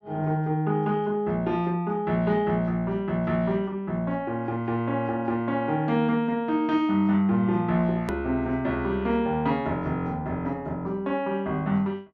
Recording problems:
treble missing; nothing above 8 kHz
hard cut with a click; at 8 s

